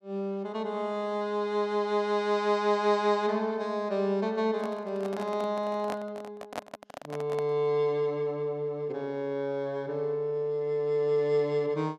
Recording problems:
handling noise; from 4.5 to 7.5 s; peak -2 dB vs average level

